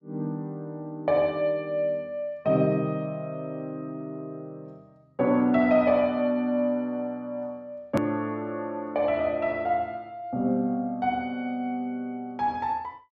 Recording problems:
edit click; at 8 s

